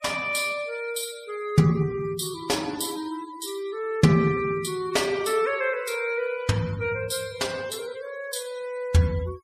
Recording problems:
noise reduction artefacts; signal-to-artefact ratio 19 dB

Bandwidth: 15 kHz